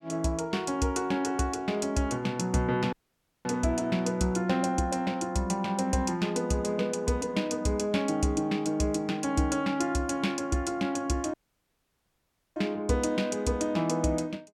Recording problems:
dropout; at 3 s for 0.5 s and at 11 s for 1 s

